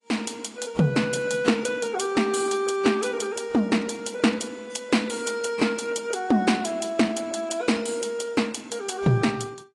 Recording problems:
lossy codec; AAC, log-spectral distance 4 dB, nothing above 10.4 kHz

